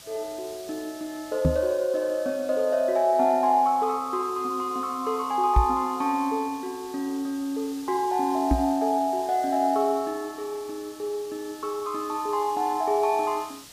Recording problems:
background hiss; SNR 19 dB
microphone bump; at 1.5 s, at 5.5 s and at 8.5 s; peak +8 dB vs average level

